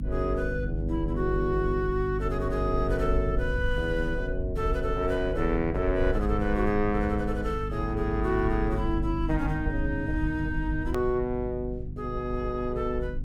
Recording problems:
hum; 50 Hz, harmonics up to 300 Hz, SNR 6 dB
low-frequency rumble; below 70 Hz, SNR 7 dB
edit click; at 11 s

